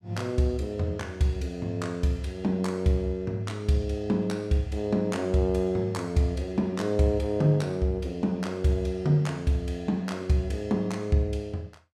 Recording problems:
none

